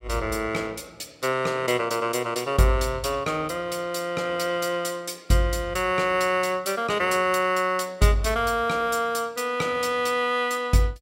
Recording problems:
none

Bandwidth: 16 kHz